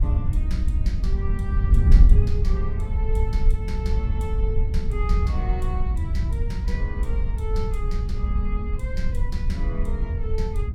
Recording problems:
wind noise; below 70 Hz, SNR -11 dB

